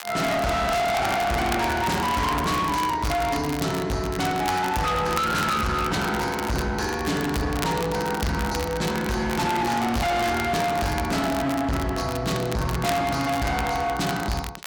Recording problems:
distortion; hard clipping, signal-to-distortion ratio 6 dB
crackling; vinyl, SNR 12 dB

